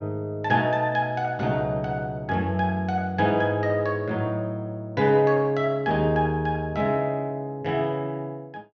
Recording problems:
none

